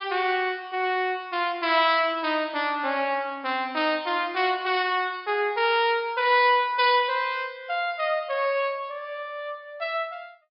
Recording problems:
low-pass filter; nothing above 5.5 kHz

